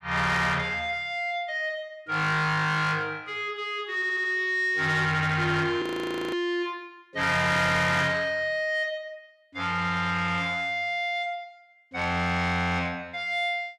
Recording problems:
distorted audio; soft clipping, signal-to-distortion ratio 11 dB
audio stuttering; at 4 s
frozen audio; at 6 s for 0.5 s

